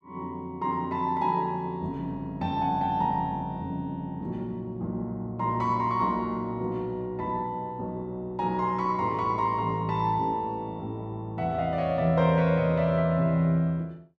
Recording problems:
none

